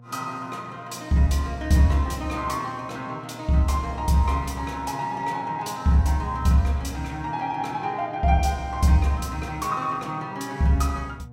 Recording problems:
electrical hum; 60 Hz, harmonics up to 720 Hz, SNR 20 dB

